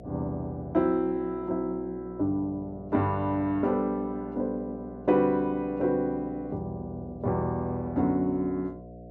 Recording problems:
electrical hum; 60 Hz, harmonics up to 720 Hz, SNR 16 dB

